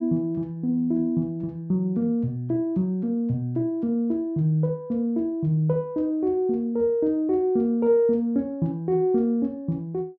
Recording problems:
none

